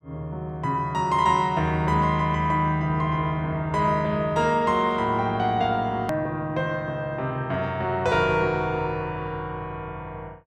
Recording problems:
hard cut with a click; at 6 s

